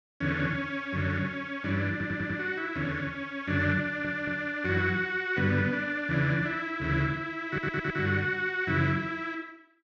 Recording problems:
audio stuttering; at 2 s, at 4 s and at 7.5 s

